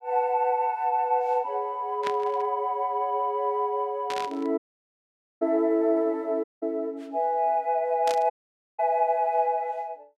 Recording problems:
burst of static; at 2 s, at 4 s and at 8 s; peak -4 dB vs average level
dropout; at 4.5 s for 1 s, at 6.5 s and at 8.5 s

